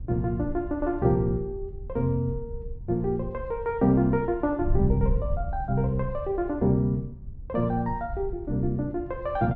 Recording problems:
wind noise; below 78 Hz, SNR 9 dB

